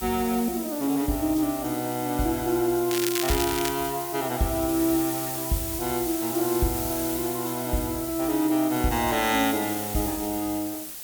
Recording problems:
hiss; slope +1 dB per octave, SNR 6 dB
crackle; at 3 s; loose cable, SNR 4 dB

